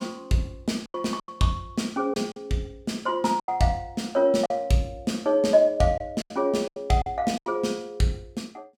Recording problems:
lost packets; 8% of the sound replaced, filled with silence

